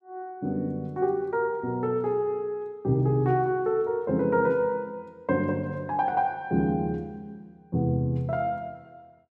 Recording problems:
none

